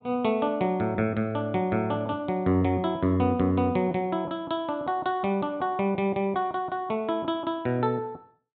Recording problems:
treble cut off; nothing above 4 kHz

